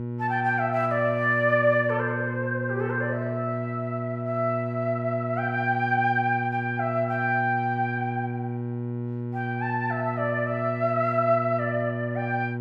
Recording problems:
hum; 60 Hz, harmonics up to 960 Hz, SNR 5 dB

